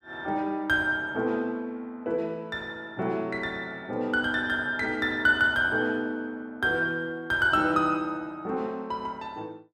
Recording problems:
none

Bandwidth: 14.5 kHz